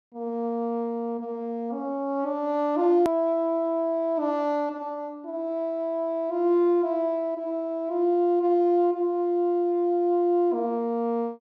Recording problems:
edit click; at 3 s

